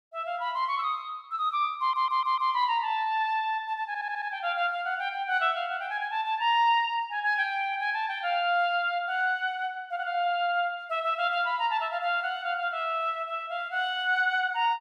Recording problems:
stutter; at 2 s and at 4 s

